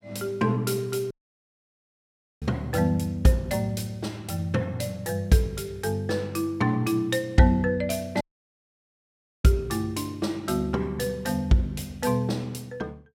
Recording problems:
dropout; at 1 s for 1.5 s and at 8 s for 1 s

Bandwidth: 16.5 kHz